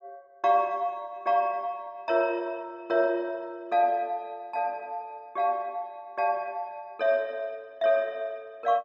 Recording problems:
none

